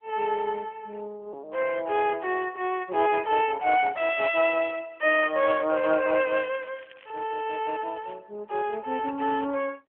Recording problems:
phone line; 320 Hz to 3.5 kHz, AMR-NB
crackling; from 5.5 to 8 s; loose cable, SNR 27 dB

